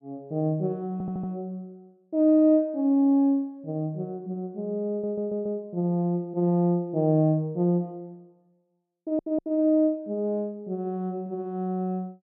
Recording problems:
audio stuttering; at 1 s, at 5 s and at 9 s

